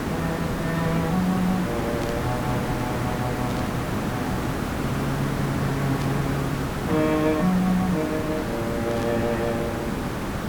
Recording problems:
background hiss; slope -7 dB per octave, SNR 1 dB
static burst; 4 times, first at 2 s; peak -7 dB vs average level

